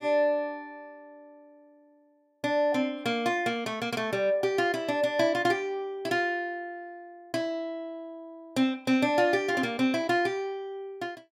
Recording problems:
none

